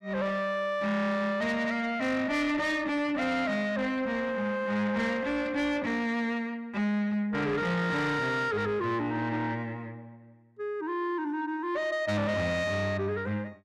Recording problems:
distortion; soft clipping, signal-to-distortion ratio 11 dB

